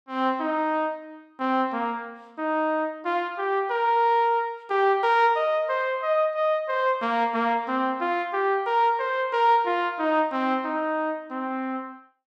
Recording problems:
none

